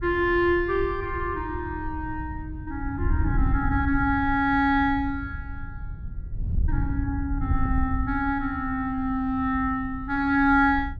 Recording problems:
wind noise; below 96 Hz, SNR 7 dB

